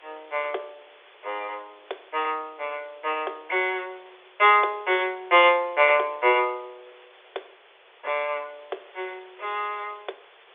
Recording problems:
telephone audio; 320 Hz to 3.8 kHz, G.711
background hiss; SNR 28 dB

